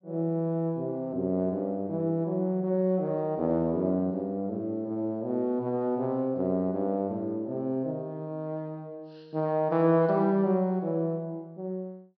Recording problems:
treble missing; nothing above 5.5 kHz

